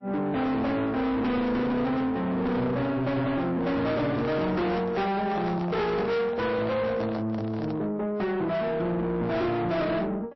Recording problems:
lossy codec; MP3, then AAC, log-spectral distance 2 dB, nothing above 5.2 kHz
distorted audio; soft clipping, signal-to-distortion ratio 7 dB
handling noise; from 4 to 8 s; peak -5 dB vs average level

